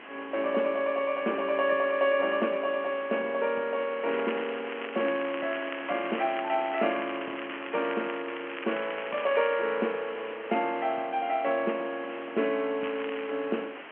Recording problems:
telephone audio; 240 Hz to 3.1 kHz, G.711
hiss; SNR 13 dB
crackling; from 4 to 9.5 s and at 13 s; loose cable, SNR 12 dB

